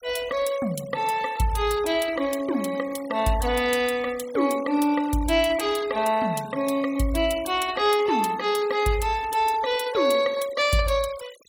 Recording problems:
denoising artefacts; signal-to-artefact ratio 19 dB

